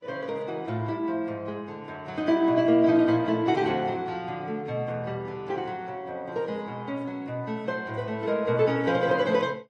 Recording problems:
lossy compression; MP3, then AAC, log-spectral distance 2 dB, nothing above 9 kHz

